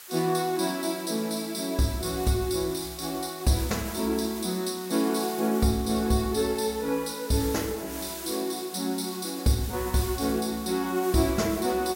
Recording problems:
hiss; SNR 13 dB

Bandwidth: 16 kHz